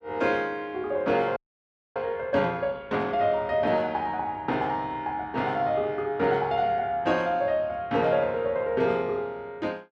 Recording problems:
frozen audio; at 1.5 s for 0.5 s

